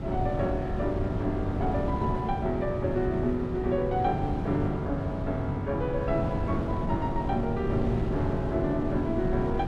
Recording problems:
wind noise; below 270 Hz, SNR 3 dB

